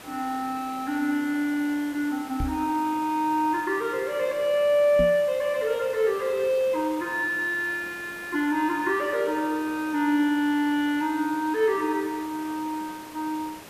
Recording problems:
hiss; slope -4 dB per octave, SNR 18 dB
microphone thump; at 2.5 s and at 5 s; peak -1 dB vs average level

